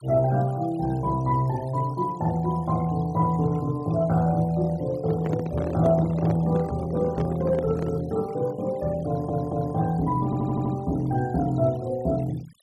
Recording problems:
noise reduction artefacts; signal-to-artefact ratio 22 dB
handling noise; from 5 to 8 s; peak -1 dB vs average level
audio stuttering; at 9 s and at 10 s

